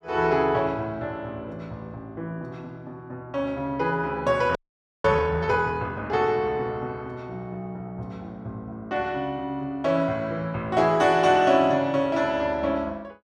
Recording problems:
audio freezing; at 4.5 s

